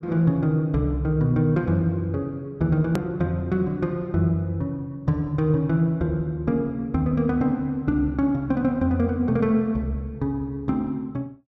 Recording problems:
edit click; at 3 s

